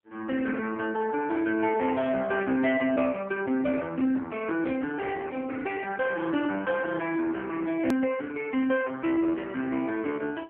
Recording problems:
telephone audio; 240 Hz to 3.3 kHz, AMR-NB
hard cut with a click; at 8 s

